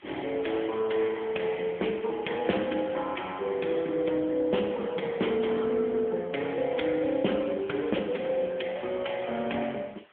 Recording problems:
phone line; 190 Hz to 3.3 kHz, AMR-NB
hiss; SNR 29 dB

